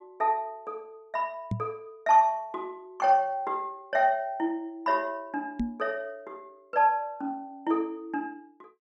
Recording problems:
microphone thump; at 1.5 s and at 5.5 s; peak +2 dB vs average level

